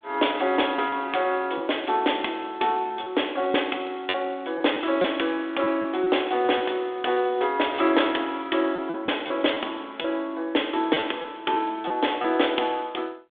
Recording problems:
phone line; 300 Hz to 3.6 kHz, G.726
packet loss; 5% of the sound replaced, filled with repeated pitch periods

